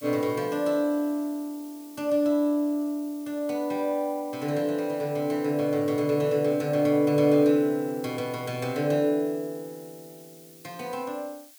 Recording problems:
hiss; slope +4 dB per octave, SNR 23 dB

